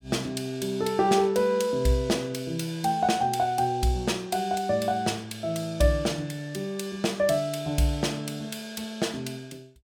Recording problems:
none

